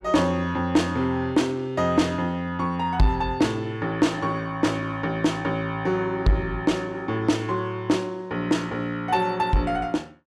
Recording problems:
distorted audio; soft clipping, signal-to-distortion ratio 11 dB

